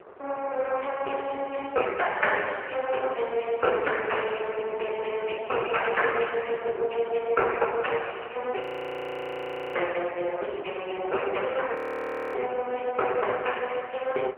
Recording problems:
telephone audio; 340 Hz to 3 kHz, AMR-NB
wind on the microphone; below 990 Hz, SNR 16 dB
frozen audio; at 8.5 s for 1 s and at 12 s for 0.5 s

